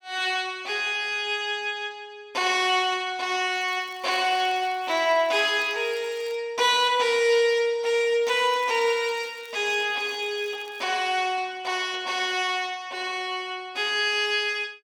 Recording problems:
crackling; from 3.5 to 6.5 s and from 8 to 11 s; loose cable, SNR 27 dB

